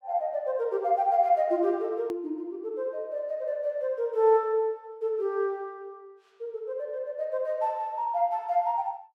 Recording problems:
edit click; at 2 s

